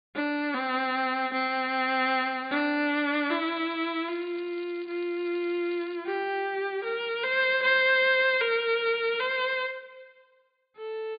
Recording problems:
treble cut off; nothing above 4.7 kHz
crackling; from 3 to 6 s; loose cable, SNR 27 dB

